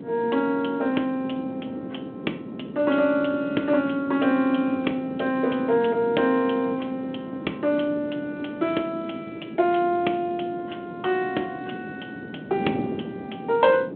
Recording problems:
phone line; 220 Hz to 3.6 kHz, G.726
wind on the microphone; below 390 Hz, SNR 11 dB

